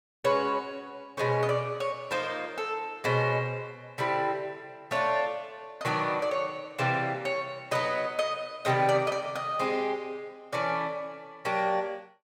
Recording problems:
none

